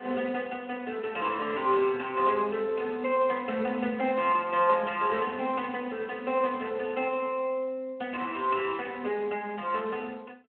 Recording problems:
phone line; 220 Hz to 3.4 kHz, Speex

